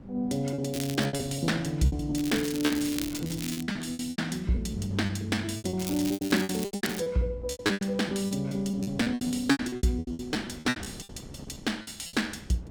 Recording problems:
wind noise; below 320 Hz, SNR 18 dB
packet loss; 19% of the sound replaced, filled with repeated pitch periods
crackle; at 0.5 s, from 2 to 3.5 s and from 6 to 7 s; loose cable, SNR 9 dB

